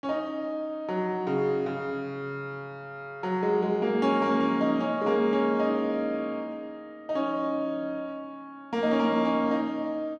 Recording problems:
none

